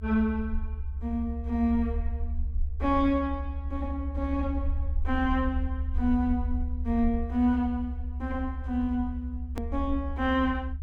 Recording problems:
rumble; below 72 Hz, SNR 4 dB
hard cut with a click; at 9.5 s

